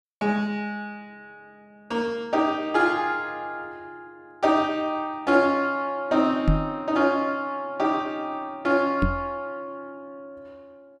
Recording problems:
microphone thump; at 6.5 s and at 9 s; peak +6 dB vs average level

